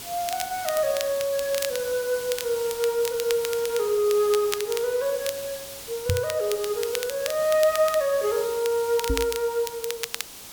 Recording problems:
background hiss; SNR 11 dB
crackling; vinyl, SNR 10 dB
microphone thump; at 6 s and at 9 s; peak +2 dB vs average level

